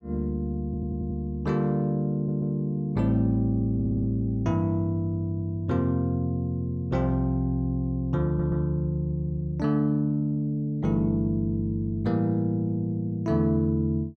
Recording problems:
audio stuttering; 4 times, first at 0.5 s

